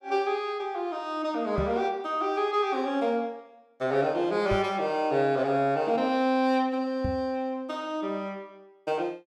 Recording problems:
microphone thump; at 1.5 s, at 4.5 s and at 7 s; peak +1 dB vs average level

